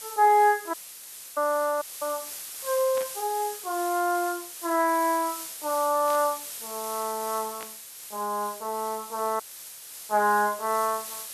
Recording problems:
hiss; slope +2 dB per octave, SNR 10 dB
dropout; at 0.5 s for 0.5 s, at 2 s and at 9.5 s for 0.5 s
burst of static; at 3 s, at 6 s and at 7.5 s; peak -10 dB vs average level

